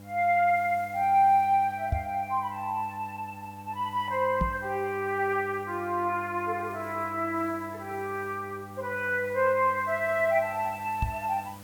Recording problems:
mains hum; 50 Hz, harmonics up to 1.3 kHz, SNR 18 dB
hiss; slope -2 dB per octave, SNR 25 dB
knock on the microphone; at 2 s, at 4.5 s and at 11 s; peak +3 dB vs average level

